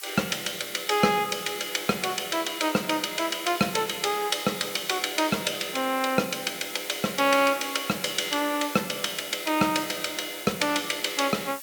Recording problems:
hiss; slope +3 dB per octave, SNR 12 dB

